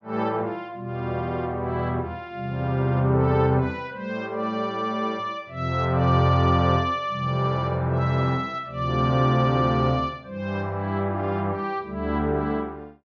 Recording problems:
treble missing; nothing above 6.9 kHz

